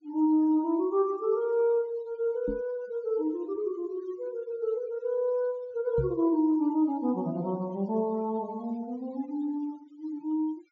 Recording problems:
treble cut off; nothing above 7.2 kHz
denoising artefacts; signal-to-artefact ratio 27 dB
knock on the microphone; at 2.5 s and at 6 s; peak 0 dB vs average level

